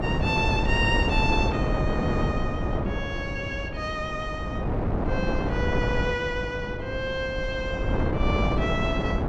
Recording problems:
hum; 50 Hz, harmonics up to 500 Hz, SNR 12 dB
wind on the microphone; below 450 Hz, SNR -1 dB

